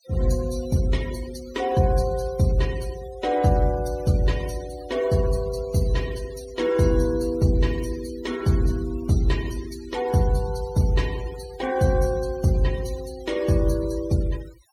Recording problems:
denoising artefacts; signal-to-artefact ratio 18 dB

